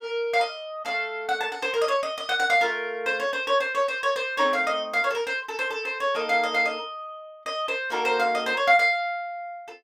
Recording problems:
none

